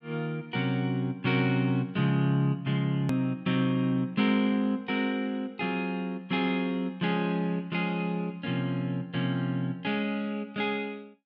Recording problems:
hard cut with a click; at 3 s

